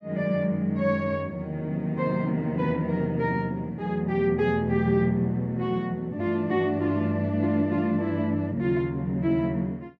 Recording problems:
none

